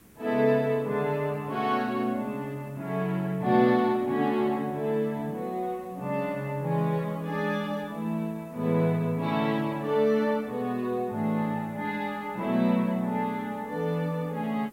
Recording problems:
background hiss; SNR 27 dB

